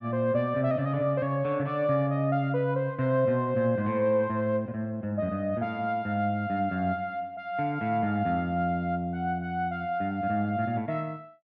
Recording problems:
none

